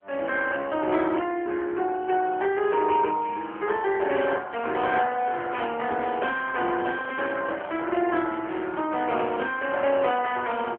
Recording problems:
telephone audio; 280 Hz to 3.2 kHz, AMR-NB
microphone handling noise; from 7 to 8.5 s; peak -7 dB vs average level

